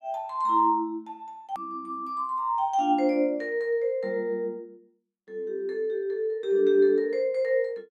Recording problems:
hard cut with a click; at 1.5 s

